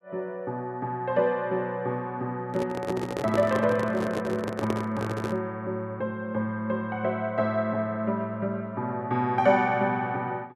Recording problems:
microphone handling noise; from 2.5 to 5.5 s; peak +2 dB vs average level

